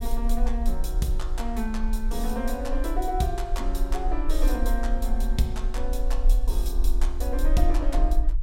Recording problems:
rumble; below 40 Hz, strongest tone 28 Hz, SNR -3 dB

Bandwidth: 16 kHz